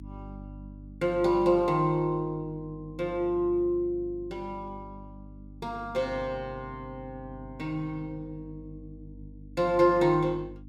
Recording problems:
electrical hum; 50 Hz, harmonics up to 300 Hz, SNR 18 dB

